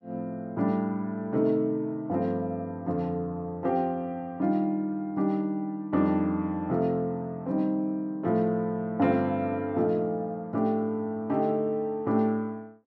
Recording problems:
none

